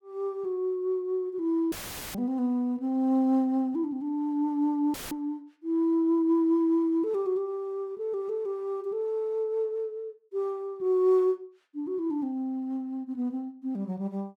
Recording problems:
audio cutting out; at 1.5 s and at 5 s; filled with static

